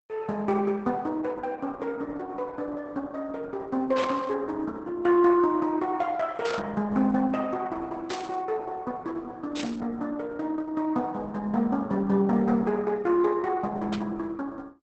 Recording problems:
lossy compression; Opus, log-spectral distance 3 dB, nothing above 7.8 kHz
burst of static; 5 times, first at 4 s; peak -3 dB vs average level

